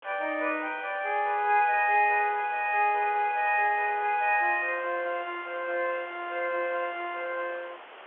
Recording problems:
phone line; 320 Hz to 3.5 kHz, G.711
hiss; SNR 19 dB

